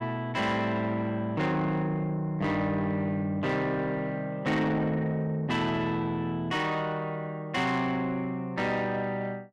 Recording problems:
distorted audio; soft clipping, signal-to-distortion ratio 12 dB

